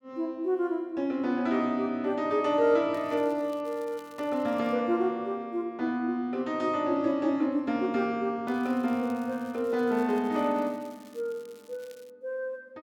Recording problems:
crackle; from 3 to 5 s and from 8.5 to 12 s; loose cable, SNR 28 dB

